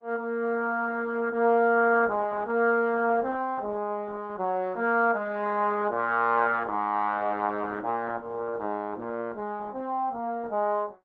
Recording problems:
lossy codec; Opus, log-spectral distance 2 dB

